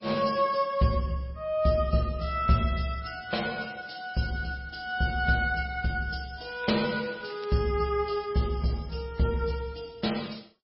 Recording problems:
lossy compression; MP3, log-spectral distance 6 dB, nothing above 5.3 kHz
crackling; from 6.5 to 7.5 s; loose cable, SNR 22 dB

